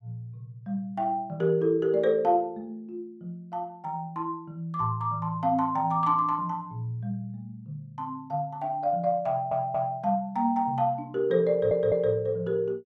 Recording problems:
stutter; at 9.5 s and at 12 s

